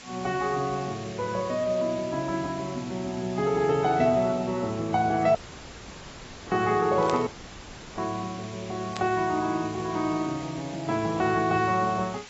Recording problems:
lossy codec; AAC, log-spectral distance 9 dB
hiss; slope 0 dB per octave, SNR 17 dB
audio cutting out; at 5.5 s for 1 s and at 7.5 s for 0.5 s
static burst; at 7 s and at 9 s; peak -4 dB vs average level

